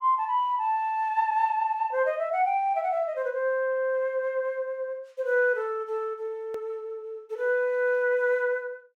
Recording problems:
hard cut with a click; at 6.5 s

